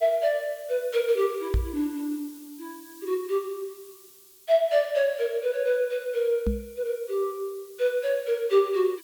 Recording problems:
hiss; SNR 22 dB
knock on the microphone; at 1.5 s and at 6.5 s; peak +3 dB vs average level

